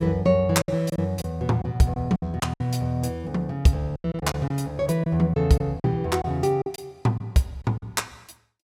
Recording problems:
packet loss; 9% of the sound replaced, filled with silence

